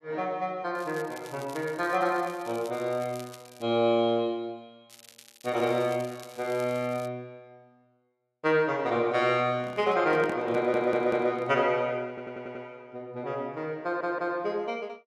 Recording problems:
crackle; from 1 to 3.5 s and from 5 to 7 s; loose cable, SNR 21 dB
handling noise; from 9.5 to 12 s; peak -5 dB vs average level
audio stuttering; at 11 s, at 12 s and at 14 s

